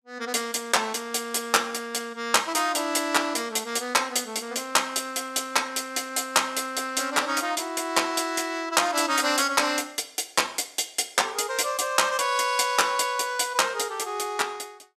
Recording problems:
none

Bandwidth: 15 kHz